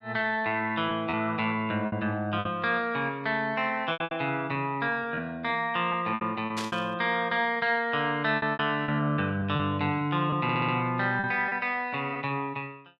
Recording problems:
lost packets; 7% of the sound replaced, filled with repeated pitch periods
static burst; at 6.5 s; peak -2 dB vs average level
stutter; at 10 s

